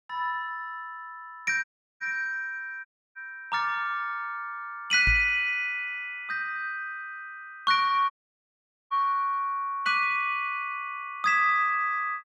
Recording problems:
dropout; at 1.5 s, at 3 s and at 8 s for 1 s
microphone bump; at 5 s; peak 0 dB vs average level

